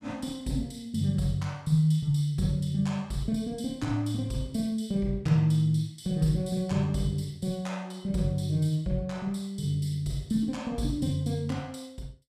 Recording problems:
none

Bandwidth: 14.5 kHz